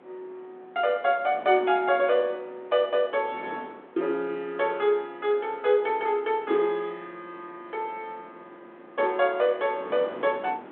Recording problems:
phone line; 240 Hz to 3.6 kHz, G.726
wind on the microphone; below 920 Hz, SNR 21 dB

